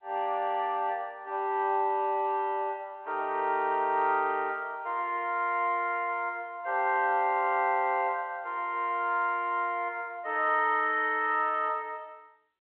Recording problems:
phone line; 300 Hz to 3.5 kHz, G.711

